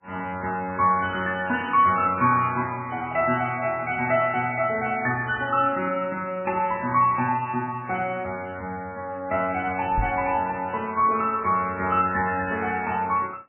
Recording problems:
lossy codec; MP3, log-spectral distance 3 dB, nothing above 3 kHz
microphone thump; at 10 s; peak 0 dB vs average level

